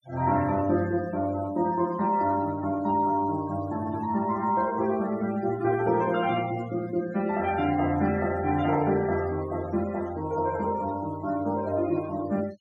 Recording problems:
denoising artefacts; signal-to-artefact ratio 18 dB

